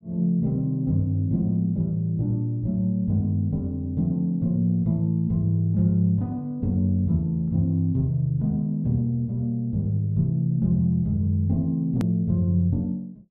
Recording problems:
click at an edit; at 12 s

